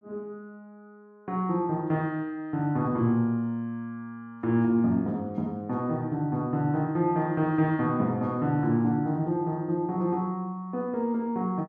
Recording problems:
none

